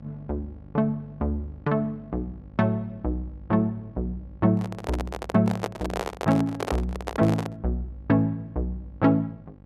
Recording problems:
hum; 50 Hz, harmonics up to 1.1 kHz, SNR 21 dB
microphone handling noise; from 4.5 to 7.5 s; peak +2 dB vs average level

